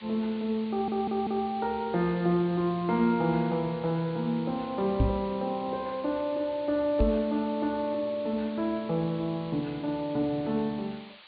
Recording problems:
treble cut off; nothing above 4.6 kHz
background hiss; SNR 20 dB
stutter; at 0.5 s
microphone bump; at 5 s and at 7 s; peak +7 dB vs average level

